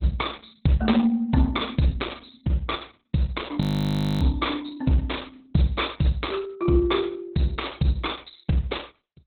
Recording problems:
lossy compression; Opus, log-spectral distance 7 dB
frozen audio; at 3.5 s for 0.5 s

